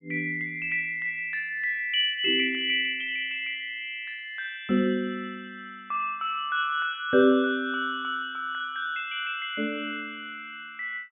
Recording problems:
treble cut off; nothing above 3.3 kHz

